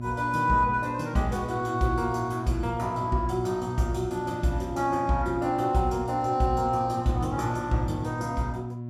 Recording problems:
hum; 60 Hz, harmonics up to 720 Hz, SNR 10 dB

